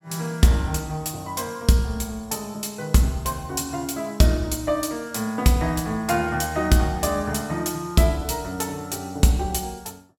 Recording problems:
none

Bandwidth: 18 kHz